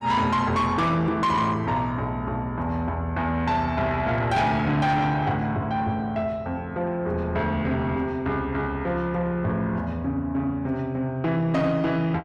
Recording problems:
distorted audio; soft clipping, signal-to-distortion ratio 10 dB

